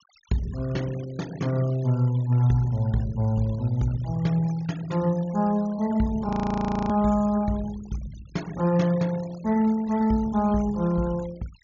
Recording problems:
treble cut off; nothing above 7.1 kHz
noise reduction artefacts; signal-to-artefact ratio 22 dB
frozen audio; at 6.5 s for 0.5 s

